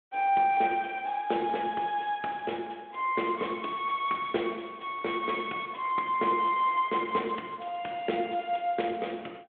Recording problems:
telephone audio; 260 Hz to 3.5 kHz, Speex

